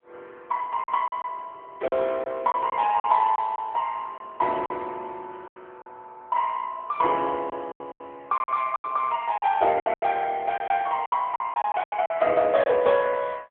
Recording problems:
phone line; 300 Hz to 2.8 kHz, AMR-NB
packet loss; 10% of the sound replaced, filled with silence

